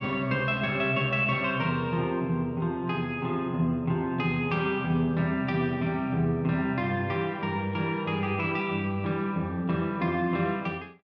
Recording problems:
none

